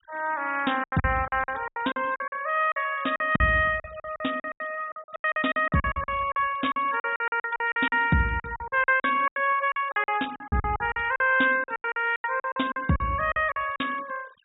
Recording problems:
low-pass filter; nothing above 4 kHz
denoising artefacts; signal-to-artefact ratio 22 dB
lost packets; 19% of the sound replaced, filled with silence

